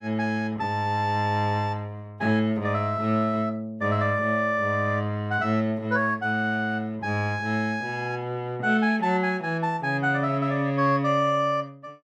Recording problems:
none

